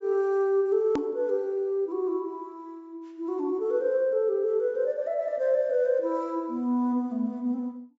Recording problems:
treble cut off; nothing above 8 kHz
click at an edit; at 1 s

